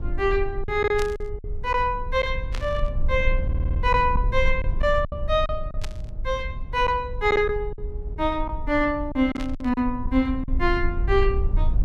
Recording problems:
low-frequency rumble; below 60 Hz, strongest tone 20 Hz, SNR 6 dB
lost packets; 6% of the sound replaced, filled with silence
static burst; 4 times, first at 1 s; peak -6 dB vs average level
stutter; at 3.5 s

